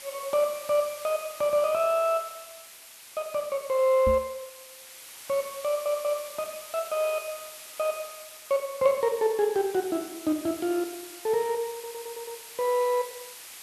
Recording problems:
background hiss; slope +2 dB per octave, SNR 15 dB
microphone bump; at 4 s; peak -1 dB vs average level
audio stuttering; at 5.5 s and at 12 s

